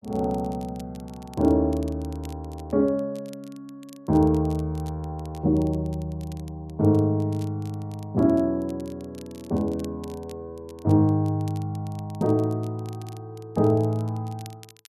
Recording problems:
crackle; vinyl, SNR 27 dB

